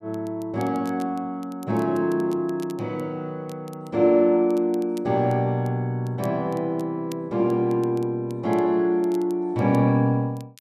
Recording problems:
crackle; vinyl, SNR 28 dB

